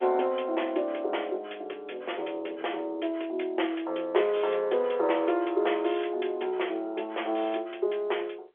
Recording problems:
telephone audio; 320 Hz to 3.4 kHz, G.711

